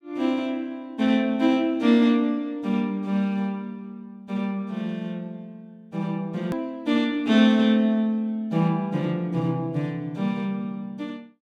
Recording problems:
hard cut with a click; at 6.5 s

